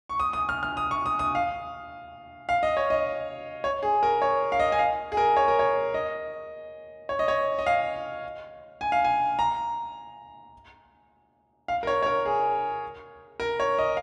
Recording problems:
none

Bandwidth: 12.5 kHz